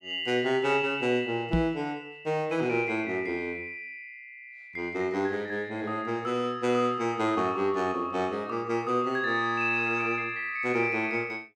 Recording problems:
microphone bump; at 1.5 s; peak +5 dB vs average level

